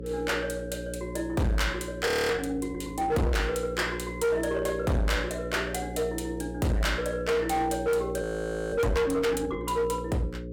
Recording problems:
distorted audio; hard clipping, signal-to-distortion ratio 6 dB
hum; 60 Hz, harmonics up to 540 Hz, SNR 10 dB
audio freezing; at 2 s and at 8 s for 0.5 s

